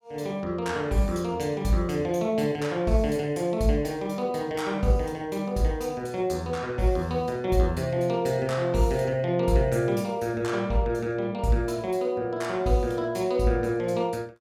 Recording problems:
none

